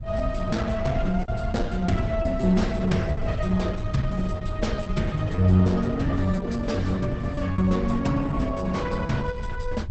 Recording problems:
lossy codec; Opus, log-spectral distance 3 dB, nothing above 8 kHz
wind on the microphone; below 92 Hz, SNR 7 dB
lost packets; 6% of the sound replaced, filled with repeated pitch periods

